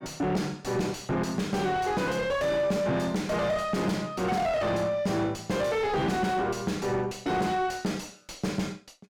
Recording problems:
distortion; soft clipping, signal-to-distortion ratio 4 dB

